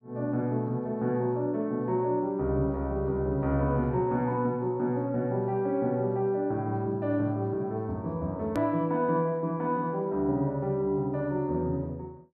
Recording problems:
hard cut with a click; at 8.5 s

